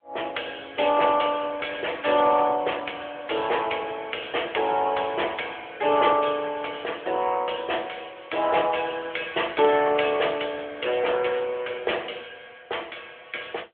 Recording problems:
phone line; 340 Hz to 3.4 kHz, AMR-NB

